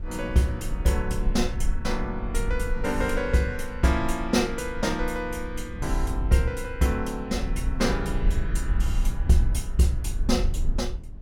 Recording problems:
low-frequency rumble; below 54 Hz, SNR 4 dB
wind noise; below 260 Hz, SNR 19 dB

